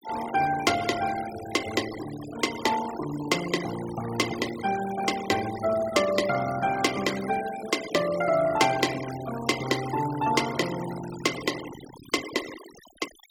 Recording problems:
denoising artefacts; signal-to-artefact ratio 11 dB

